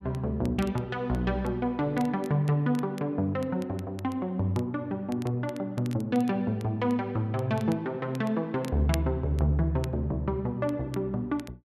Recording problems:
crackle; vinyl, SNR 22 dB

